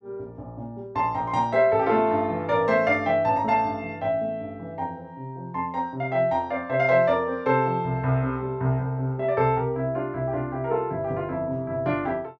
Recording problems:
none

